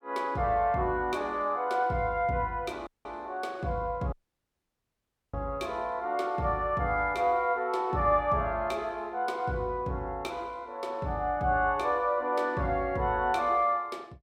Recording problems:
dropout; at 3 s and at 4 s for 1 s

